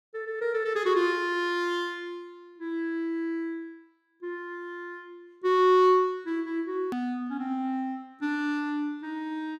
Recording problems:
hard cut with a click; at 7 s

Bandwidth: 15 kHz